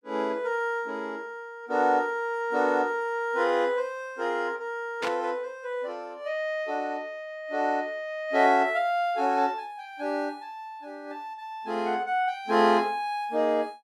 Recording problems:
burst of static; at 5 s; peak -2 dB vs average level

